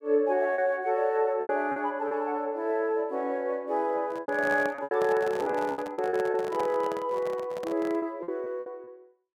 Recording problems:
packet loss; 9% of the sound replaced, filled with repeated pitch periods
microphone handling noise; from 4 to 8 s; peak -4 dB vs average level

